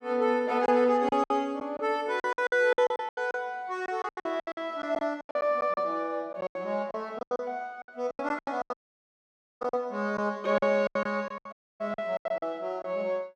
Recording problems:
packet loss; 17% of the sound replaced, filled with silence
audio cutting out; at 8.5 s for 1 s and at 12 s

